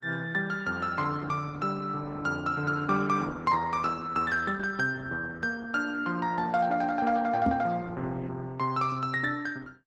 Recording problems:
lossy codec; Opus, log-spectral distance 3 dB, nothing above 13.3 kHz
microphone thump; at 7.5 s; peak +4 dB vs average level

